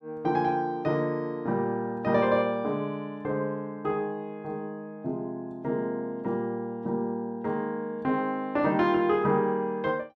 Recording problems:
none

